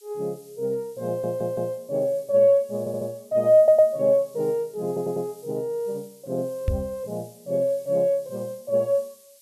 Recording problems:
hiss; SNR 27 dB
audio stuttering; 4 times, first at 1 s
knock on the microphone; at 6.5 s; peak +3 dB vs average level

